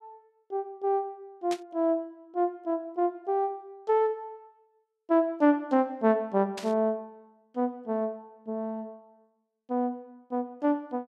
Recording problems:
burst of static; at 1.5 s and at 6.5 s; peak -5 dB vs average level

